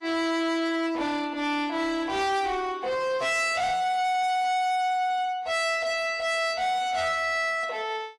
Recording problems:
codec artefacts; AAC, log-spectral distance 2 dB, nothing above 11.3 kHz
distorted audio; hard clipping, uneven, signal-to-distortion ratio 7 dB

